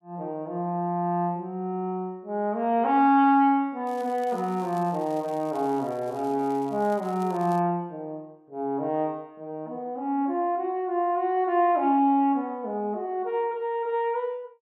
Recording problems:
crackling; from 4 to 7.5 s; loose cable, SNR 26 dB

